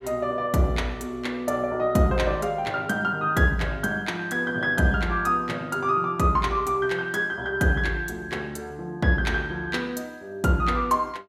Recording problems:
none

